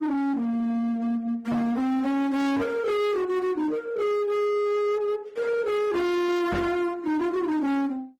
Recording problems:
lossy compression; Opus, then Opus, log-spectral distance 2 dB, nothing above 18.9 kHz
distorted audio; hard clipping, signal-to-distortion ratio 6 dB
microphone bump; at 1.5 s and at 6.5 s; peak 0 dB vs average level

